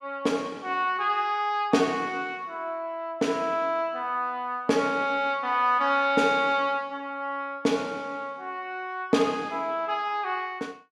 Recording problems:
none

